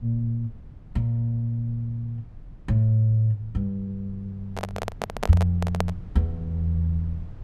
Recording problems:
low-frequency rumble; below 120 Hz, SNR 18 dB
microphone handling noise; from 4.5 to 6 s; peak +3 dB vs average level

